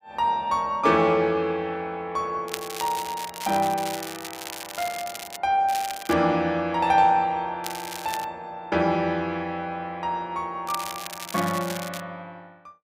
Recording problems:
crackling; 4 times, first at 2.5 s; loose cable, SNR 11 dB

